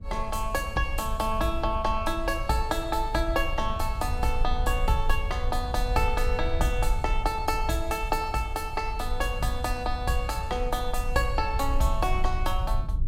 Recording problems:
rumble; below 58 Hz, strongest tone 20 Hz, SNR 4 dB

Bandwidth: 16 kHz